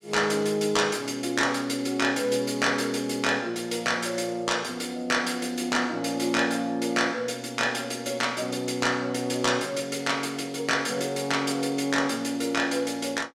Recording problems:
none

